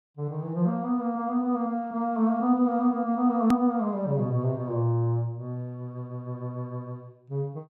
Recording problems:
hard cut with a click; at 3.5 s

